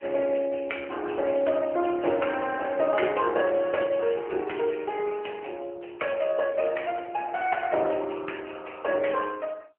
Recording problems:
telephone audio; 300 Hz to 3 kHz, AMR-NB

